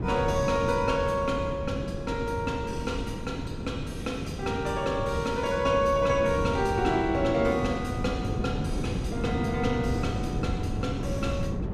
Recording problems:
wind on the microphone; below 280 Hz, SNR 4 dB

